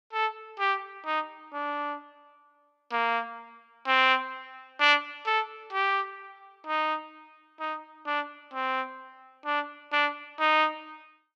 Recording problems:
none

